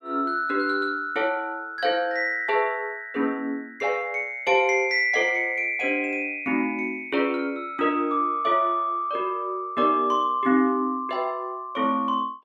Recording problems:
none

